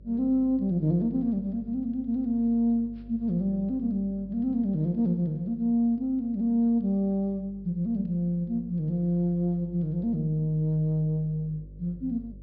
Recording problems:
low-pass filter; nothing above 5.5 kHz
hum; 50 Hz, harmonics up to 550 Hz, SNR 21 dB

